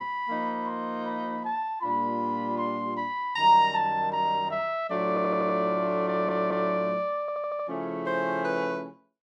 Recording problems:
stutter; at 5 s, at 6 s and at 7 s

